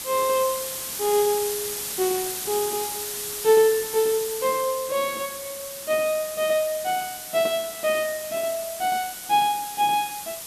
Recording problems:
background hiss; slope +1 dB per octave, SNR 6 dB

